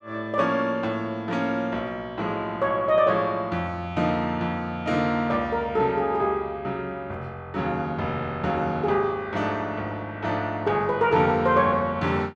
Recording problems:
none

